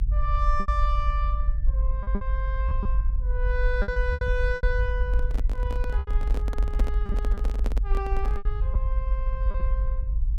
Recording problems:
rumble; below 52 Hz, SNR -6 dB
packet loss; 8% of the sound replaced, filled with repeated pitch periods
handling noise; from 5 to 8.5 s; peak +3 dB vs average level

